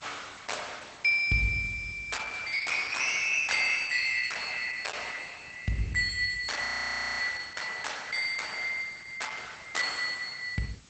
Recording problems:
lossy compression; Opus, log-spectral distance 8 dB, nothing above 8 kHz
hiss; slope -1 dB per octave, SNR 26 dB
frozen audio; at 6.5 s for 0.5 s

